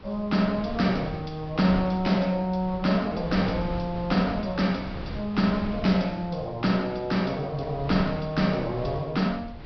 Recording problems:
treble missing; nothing above 5.5 kHz
wind noise; below 310 Hz, SNR 13 dB

